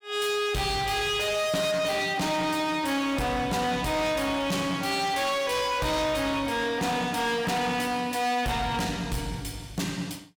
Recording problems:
distorted audio; hard clipping, signal-to-distortion ratio 8 dB

